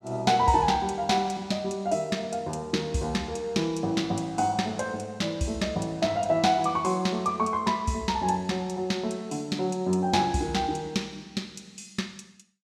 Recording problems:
none

